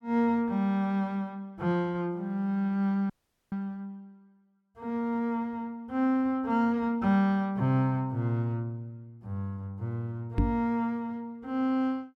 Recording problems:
audio cutting out; at 3 s
microphone bump; at 10 s; peak +7 dB vs average level

